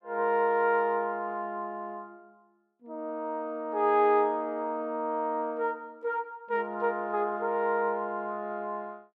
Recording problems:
none

